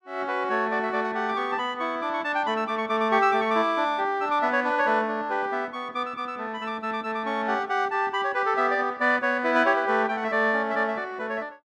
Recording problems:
none

